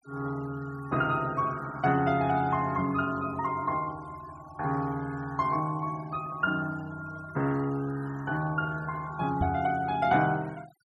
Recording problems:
denoising artefacts; signal-to-artefact ratio 21 dB
microphone thump; at 9.5 s; peak +4 dB vs average level

